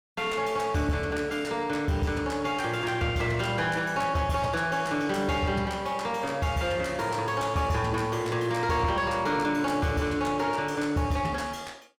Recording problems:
distortion; soft clipping, signal-to-distortion ratio 11 dB

